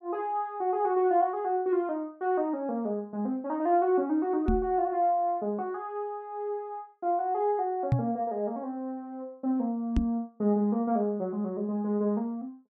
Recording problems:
microphone bump; at 4.5 s, at 8 s and at 10 s; peak +7 dB vs average level

